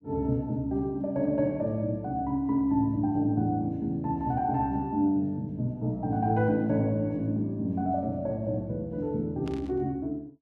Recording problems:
burst of static; at 9.5 s; peak -13 dB vs average level

